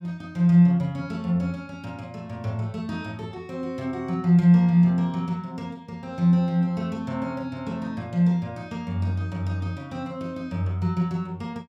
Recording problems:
none

